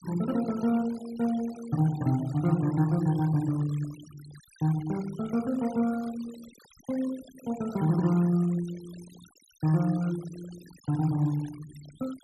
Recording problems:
noise reduction artefacts; signal-to-artefact ratio 20 dB

